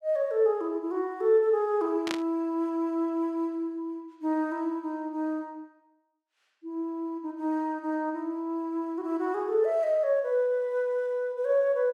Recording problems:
static burst; at 2 s; peak 0 dB vs average level

